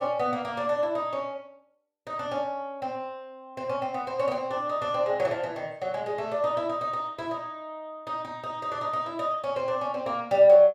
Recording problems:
none

